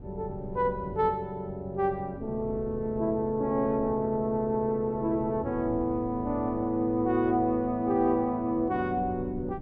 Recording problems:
wind on the microphone; below 240 Hz, SNR 16 dB

